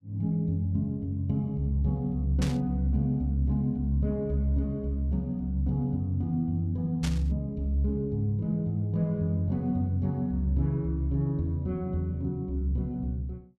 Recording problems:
burst of static; at 2.5 s and at 7 s; peak -4 dB vs average level

